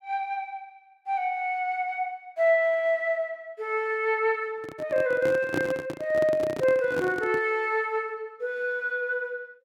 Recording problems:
microphone handling noise; from 4.5 to 7.5 s; peak +2 dB vs average level

